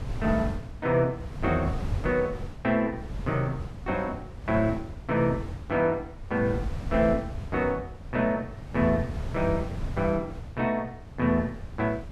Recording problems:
wind on the microphone; below 140 Hz, SNR 9 dB

